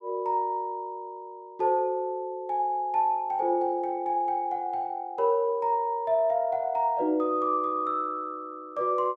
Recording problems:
none

